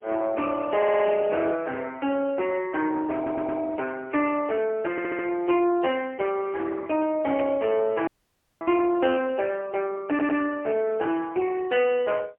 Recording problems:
phone line; 260 Hz to 3.1 kHz, AMR-NB, then MP3
distorted audio; soft clipping, signal-to-distortion ratio 14 dB
stutter; 4 times, first at 1 s
burst of static; at 7.5 s; peak -17 dB vs average level
audio cutting out; at 8 s for 0.5 s

